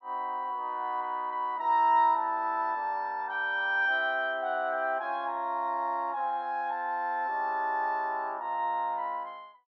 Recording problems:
none

